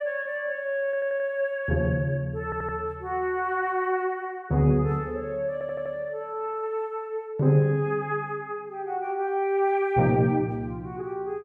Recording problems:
stutter; at 1 s, at 2.5 s and at 5.5 s

